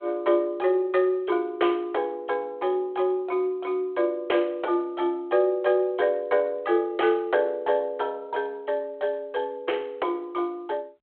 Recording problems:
telephone audio; 300 Hz to 3.3 kHz, G.726

